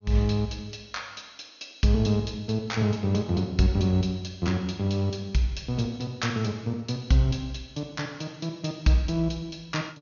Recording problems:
low-pass filter; nothing above 6.7 kHz

